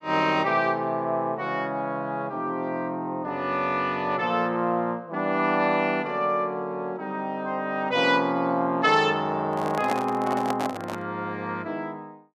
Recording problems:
handling noise; from 9.5 to 11 s; peak +1 dB vs average level

